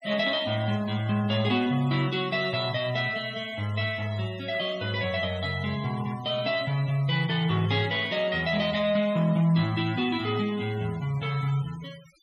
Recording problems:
denoising artefacts; signal-to-artefact ratio 19 dB

